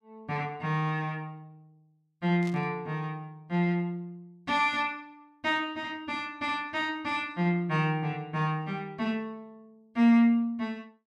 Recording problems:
static burst; at 2.5 s; peak -13 dB vs average level

